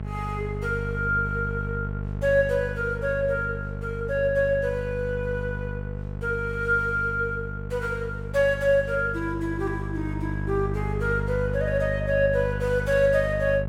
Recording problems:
mains hum; 50 Hz, harmonics up to 850 Hz, SNR 6 dB

